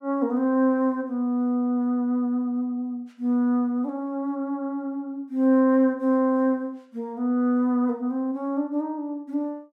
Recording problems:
none

